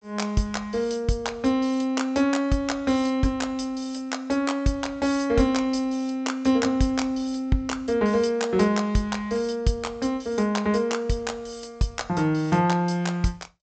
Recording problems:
treble missing; nothing above 8 kHz

